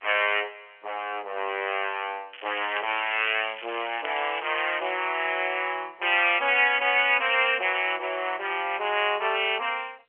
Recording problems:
telephone audio; 300 Hz to 3.2 kHz, G.711
crackle; from 2.5 to 5 s; loose cable, SNR 15 dB

